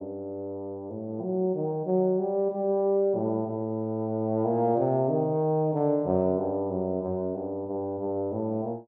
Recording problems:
none

